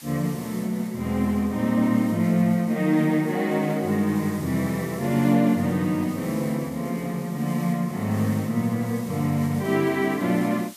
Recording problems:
background hiss; slope +2 dB per octave, SNR 20 dB

